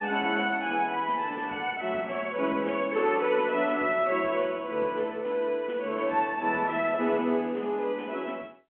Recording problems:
phone line; 220 Hz to 3.2 kHz, G.711

